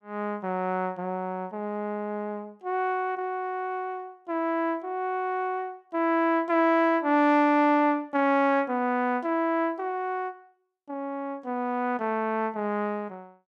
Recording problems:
none

